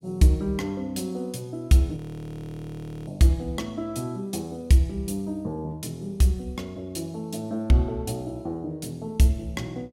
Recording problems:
audio freezing; at 2 s for 1 s

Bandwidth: 16 kHz